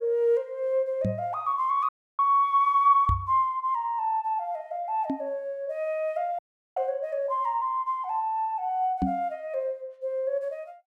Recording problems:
knock on the microphone; 4 times, first at 1 s; peak +4 dB vs average level
audio cutting out; at 2 s and at 6.5 s

